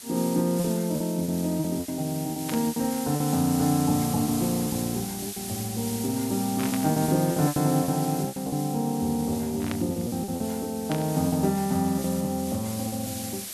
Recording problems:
background hiss; SNR 9 dB
packet loss; 9% of the sound replaced, filled with repeated pitch periods
static burst; 4 times, first at 2.5 s; peak -5 dB vs average level

